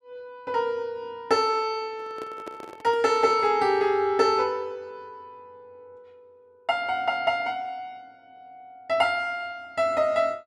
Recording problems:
handling noise; from 2 to 3.5 s; peak -10 dB vs average level

